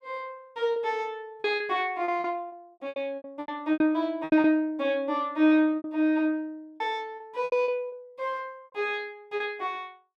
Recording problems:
packet loss; 11% of the sound replaced, filled with repeated pitch periods

